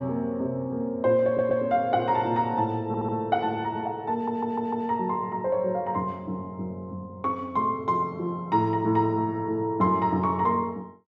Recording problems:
audio stuttering; at 1.5 s, at 3 s and at 4 s

